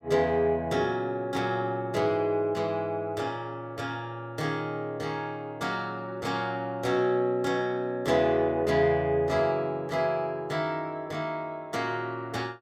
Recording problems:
none

